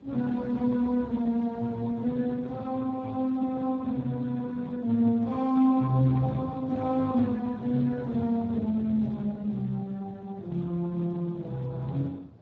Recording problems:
lossy codec; Speex, log-spectral distance 2 dB, nothing above 16.5 kHz
wind on the microphone; below 350 Hz, SNR 23 dB

